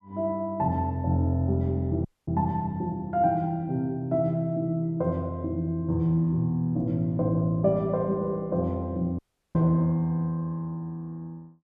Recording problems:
audio cutting out; at 2 s and at 9 s

